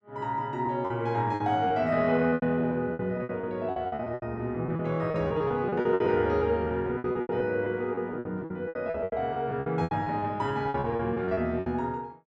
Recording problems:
lost packets; 17% of the sound replaced, filled with repeated pitch periods

